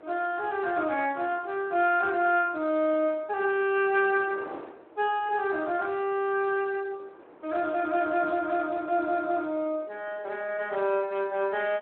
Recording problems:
phone line; 260 Hz to 3.3 kHz, Speex
wind noise; below 840 Hz, SNR 22 dB

